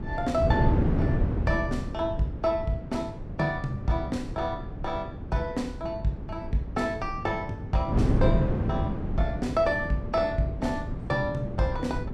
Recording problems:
wind on the microphone; below 240 Hz, SNR 2 dB

